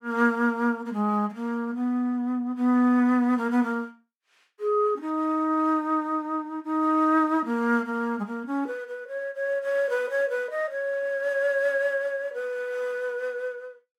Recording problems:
none

